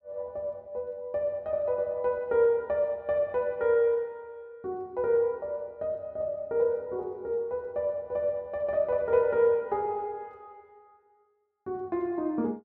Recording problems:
none

